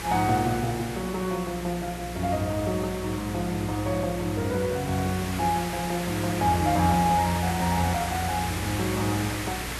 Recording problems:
hum; 60 Hz, harmonics up to 420 Hz, SNR 14 dB
hiss; SNR 8 dB

